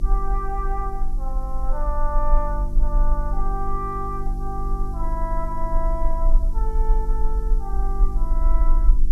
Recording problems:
mains hum; 50 Hz, harmonics up to 350 Hz, SNR 4 dB
hiss; SNR 27 dB
rumble; below 36 Hz, strongest tone 22 Hz, SNR -5 dB

